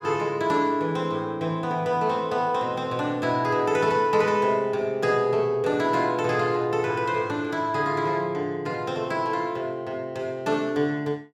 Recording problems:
none

